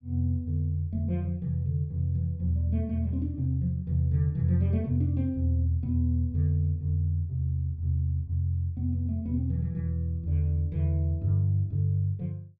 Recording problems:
none

